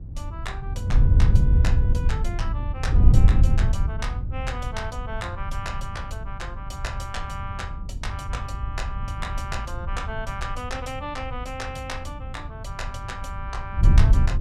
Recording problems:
wind on the microphone; below 88 Hz, SNR -10 dB

